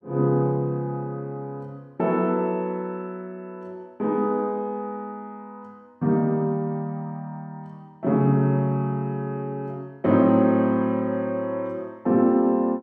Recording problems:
none

